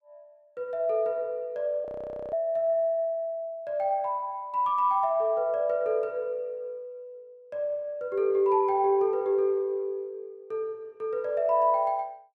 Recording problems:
frozen audio; at 2 s

